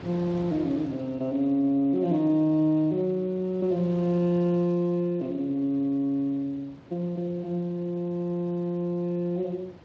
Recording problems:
codec artefacts; Speex, log-spectral distance 2 dB
wind on the microphone; below 770 Hz, SNR 22 dB

